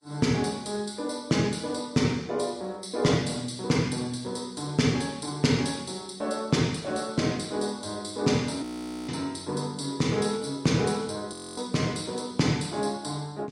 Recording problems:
lossy compression; Vorbis, log-spectral distance 4 dB, nothing above 16 kHz
frozen audio; at 8.5 s and at 11 s

